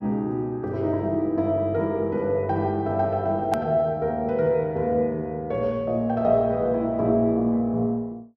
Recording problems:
hard cut with a click; at 3.5 s

